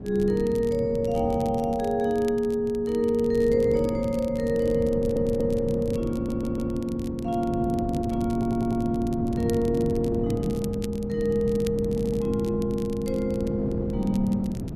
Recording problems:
wind noise; below 270 Hz, SNR 7 dB
crackle; vinyl, SNR 23 dB
audio stuttering; 4 times, first at 5 s

